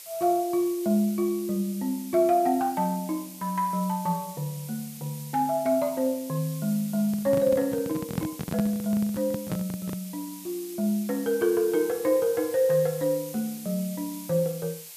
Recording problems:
background hiss; SNR 15 dB
microphone handling noise; from 7 to 10 s; peak +2 dB vs average level

